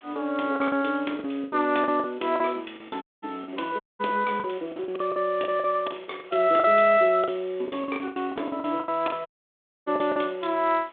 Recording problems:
phone line; 240 Hz to 3.6 kHz, G.726
hiss; SNR 29 dB
packet loss; 15% of the sound replaced, filled with the last packet
dropout; at 3 s, at 4 s and at 9.5 s for 0.5 s

